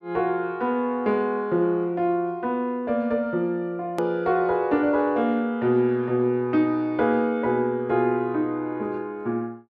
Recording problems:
click at an edit; at 4 s

